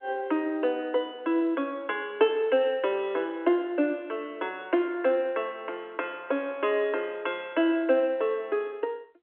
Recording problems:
phone line; 280 Hz to 3.5 kHz, G.711

